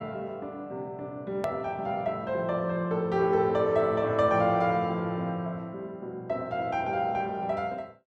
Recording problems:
hard cut with a click; at 1.5 s

